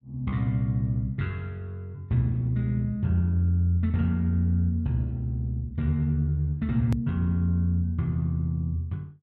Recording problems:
click at an edit; at 7 s

